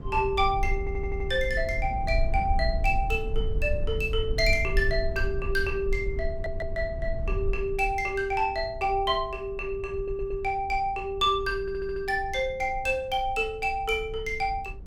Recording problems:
rumble; below 62 Hz, SNR 7 dB
stutter; 4 times, first at 1 s

